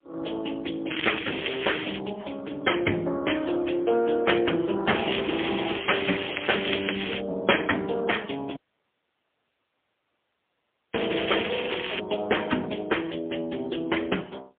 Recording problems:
phone line; 220 Hz to 3.4 kHz, AMR-NB, then MP3
crackling; from 1 to 2 s, from 5 to 7 s and from 11 to 12 s; loose cable, SNR 4 dB
audio cutting out; at 8.5 s for 2.5 s

